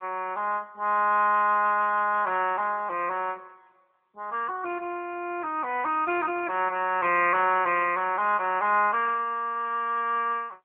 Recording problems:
phone line; 240 Hz to 3.3 kHz, AMR-NB

